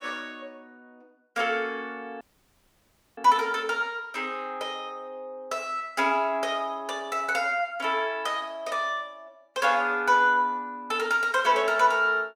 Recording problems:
dropout; at 2 s for 1 s

